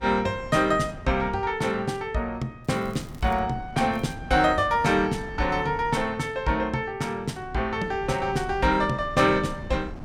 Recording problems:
wind noise; below 230 Hz, SNR 16 dB
crackling; at 2.5 s and at 4 s; loose cable, SNR 30 dB

